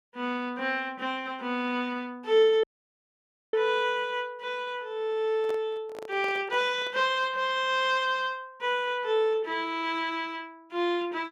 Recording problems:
audio cutting out; at 2.5 s for 1 s
microphone handling noise; from 5.5 to 7 s; peak -8 dB vs average level

